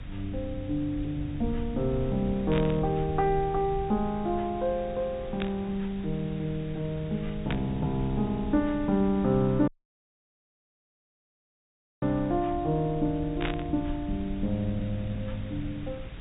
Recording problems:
low-pass filter; nothing above 4 kHz
background hiss; SNR 18 dB
low-frequency rumble; below 96 Hz, SNR 12 dB
burst of static; 4 times, first at 2.5 s; peak 0 dB vs average level
dropout; at 9.5 s for 2.5 s

